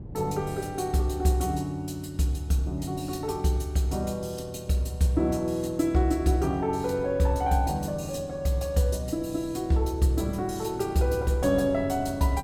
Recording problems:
wind on the microphone; below 230 Hz, SNR 18 dB

